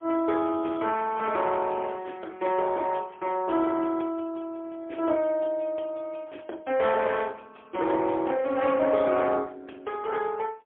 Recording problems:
phone line; 280 Hz to 3.4 kHz, AMR-NB, then MP3

